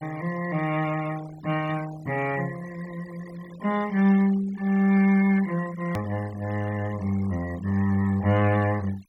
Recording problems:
denoising artefacts; signal-to-artefact ratio 19 dB
hard cut with a click; at 6 s

